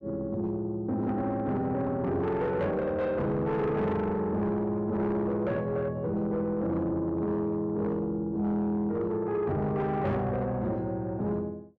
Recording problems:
distorted audio; soft clipping, signal-to-distortion ratio 10 dB

